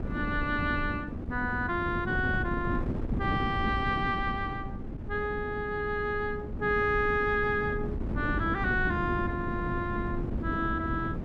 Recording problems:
wind on the microphone; below 260 Hz, SNR 4 dB

